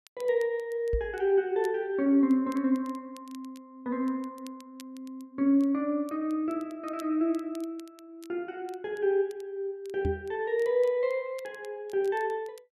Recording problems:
crackling; vinyl, SNR 28 dB
knock on the microphone; at 1 s and at 10 s; peak +1 dB vs average level

